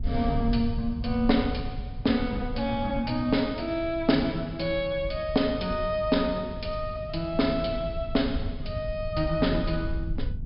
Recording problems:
treble cut off; nothing above 5.5 kHz
hum; 50 Hz, harmonics up to 650 Hz, SNR 19 dB
rumble; below 92 Hz, SNR 9 dB

